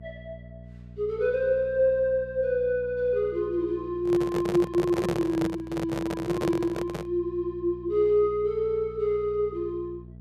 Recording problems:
electrical hum; 60 Hz, harmonics up to 480 Hz, SNR 18 dB
handling noise; from 4 to 7 s; peak 0 dB vs average level

